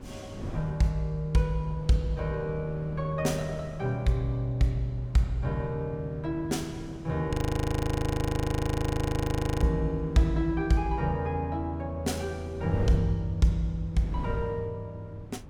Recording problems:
wind noise; below 240 Hz, SNR 14 dB
audio freezing; at 7.5 s for 2.5 s

